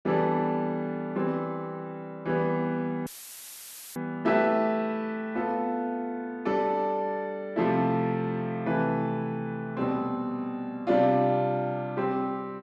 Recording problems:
dropout; at 3 s for 1 s; filled with static

